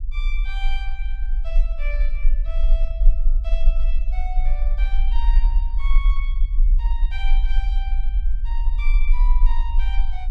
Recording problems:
rumble; below 38 Hz, strongest tone 20 Hz, SNR -14 dB

